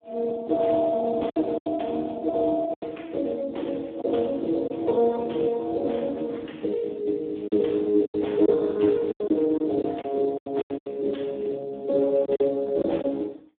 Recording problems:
phone line; 220 Hz to 3.6 kHz, Speex
packet loss; 7% of the sound replaced, filled with silence

